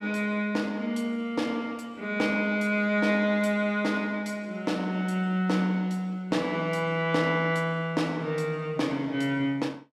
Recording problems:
none

